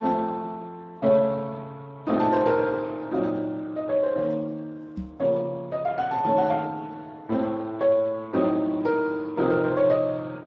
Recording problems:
lossy compression; Speex, log-spectral distance 3 dB
microphone bump; at 5 s; peak -4 dB vs average level

